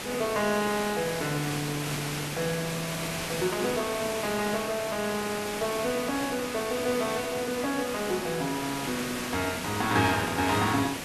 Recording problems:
hiss; slope -3 dB per octave, SNR 4 dB

